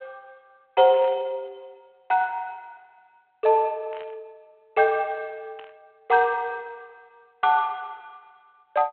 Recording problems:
phone line; 320 Hz to 3.3 kHz, G.726
static burst; at 1 s, at 4 s and at 5.5 s; peak -16 dB vs average level

